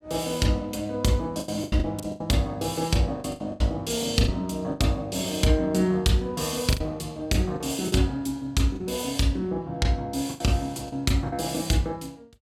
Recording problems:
lost packets; 8% of the sound replaced, filled with the last packet

